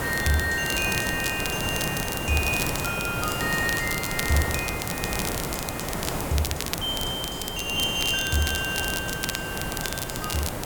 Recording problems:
hiss; slope -6 dB per octave, SNR 3 dB
crackling; vinyl, SNR 6 dB

